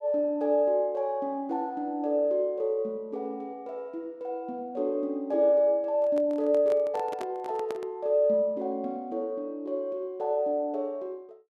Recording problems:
microphone handling noise; from 6 to 8 s; peak -5 dB vs average level

